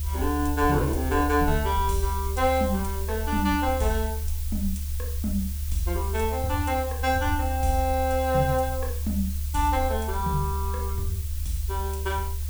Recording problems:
background hiss; slope +2 dB per octave, SNR 11 dB
rumble; below 76 Hz, strongest tone 74 Hz, SNR 3 dB

